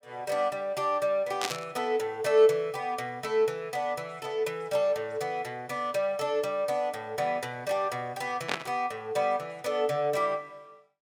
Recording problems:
burst of static; at 1.5 s and at 8.5 s; peak +3 dB vs average level

